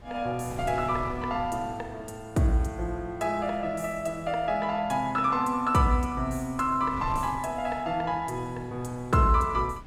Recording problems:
wind on the microphone; below 290 Hz, SNR 17 dB

